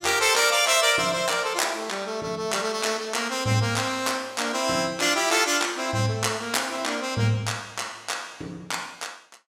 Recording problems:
none

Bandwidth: 16.5 kHz